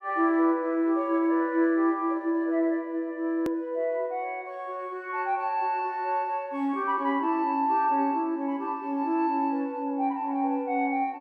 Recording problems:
click at an edit; at 3.5 s

